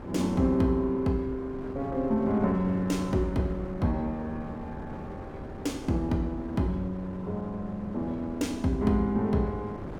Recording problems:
wind on the microphone; below 480 Hz, SNR 12 dB

